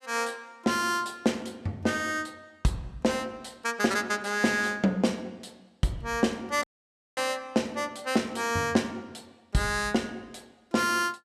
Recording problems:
dropout; at 6.5 s for 0.5 s

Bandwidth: 14.5 kHz